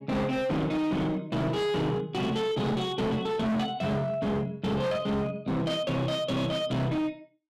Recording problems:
distortion; hard clipping, signal-to-distortion ratio 7 dB

